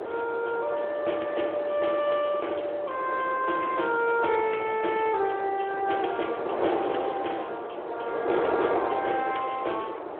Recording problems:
telephone audio; 280 Hz to 3.3 kHz, Speex
wind noise; below 830 Hz, SNR 4 dB

